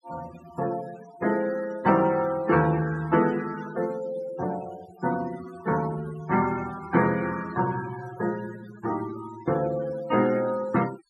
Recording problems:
noise reduction artefacts; signal-to-artefact ratio 16 dB

